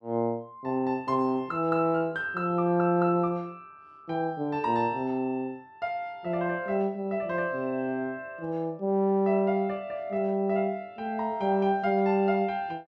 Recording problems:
none

